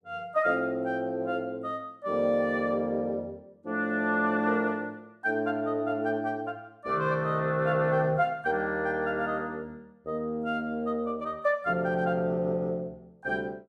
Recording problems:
none

